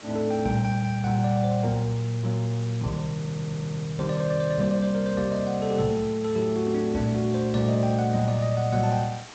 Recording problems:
codec artefacts; G.722, log-spectral distance 5 dB
background hiss; slope -2 dB per octave, SNR 18 dB
audio stuttering; at 3 s

